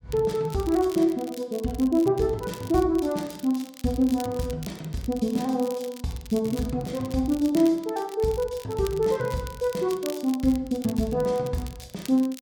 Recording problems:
crackle; vinyl, SNR 19 dB

